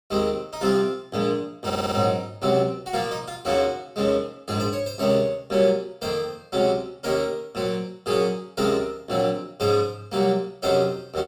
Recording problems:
audio stuttering; at 1.5 s

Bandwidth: 17 kHz